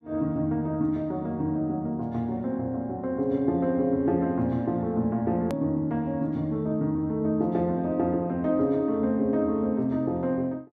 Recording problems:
edit click; at 5.5 s

